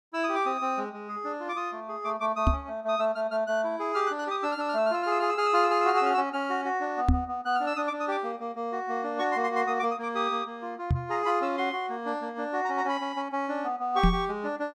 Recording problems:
microphone bump; 4 times, first at 2.5 s; peak +8 dB vs average level

